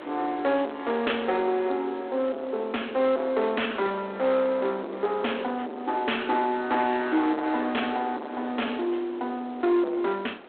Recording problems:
telephone audio; 260 Hz to 3.5 kHz, G.726
distortion; soft clipping, signal-to-distortion ratio 7 dB
wind noise; below 1.3 kHz, SNR 17 dB

